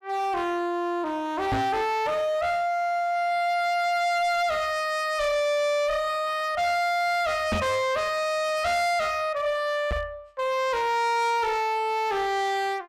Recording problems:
distortion; hard clipping, signal-to-distortion ratio 7 dB
knock on the microphone; at 1.5 s, at 7.5 s and at 10 s; peak +2 dB vs average level

